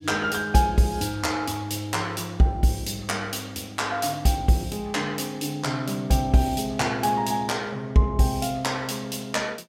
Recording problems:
none

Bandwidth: 16.5 kHz